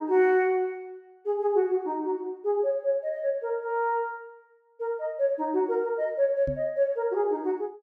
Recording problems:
microphone thump; at 6.5 s; peak -4 dB vs average level

